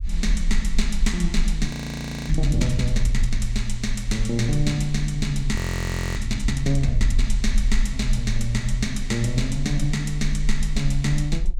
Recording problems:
rumble; below 44 Hz, SNR 2 dB
audio freezing; at 1.5 s for 0.5 s and at 5.5 s for 0.5 s

